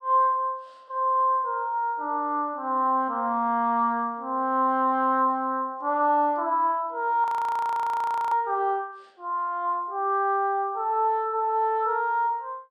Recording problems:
audio freezing; at 7 s for 1 s

